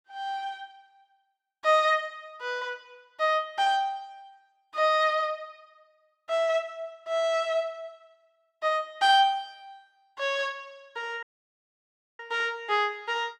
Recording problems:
audio cutting out; at 11 s for 1 s

